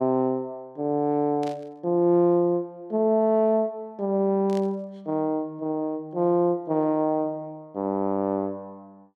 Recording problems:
static burst; at 1.5 s and at 4.5 s; peak -14 dB vs average level

